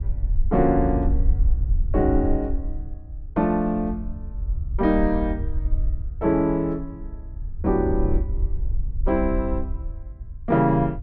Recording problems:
wind on the microphone; below 62 Hz, SNR 5 dB

